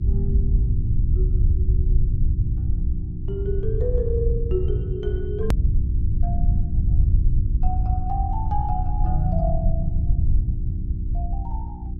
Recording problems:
hum; 60 Hz, harmonics up to 360 Hz, SNR 2 dB
low-frequency rumble; below 84 Hz, SNR -7 dB
click at an edit; at 5.5 s

